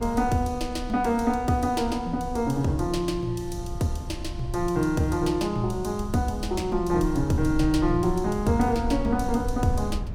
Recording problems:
low-frequency rumble; below 86 Hz, SNR 10 dB

